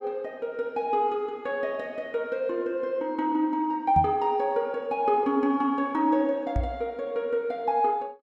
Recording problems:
knock on the microphone; at 4 s and at 6.5 s; peak +2 dB vs average level

